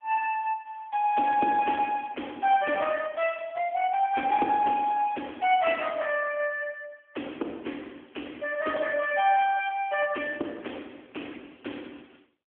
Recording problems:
phone line; 240 Hz to 3.3 kHz, AMR-NB

